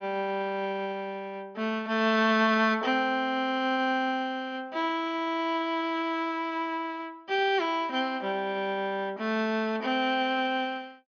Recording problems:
treble cut off; nothing above 6.3 kHz

